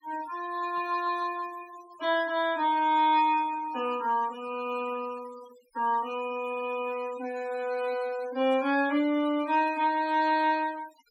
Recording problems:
denoising artefacts; signal-to-artefact ratio 20 dB
burst of static; at 8.5 s; peak -21 dB vs average level

